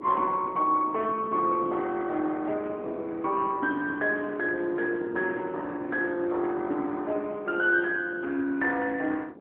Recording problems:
phone line; 240 Hz to 3.1 kHz, AMR-NB
wind on the microphone; below 470 Hz, SNR 14 dB

